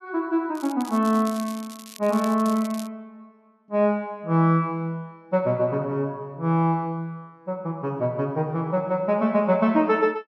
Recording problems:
crackling; from 0.5 to 3 s; loose cable, SNR 18 dB

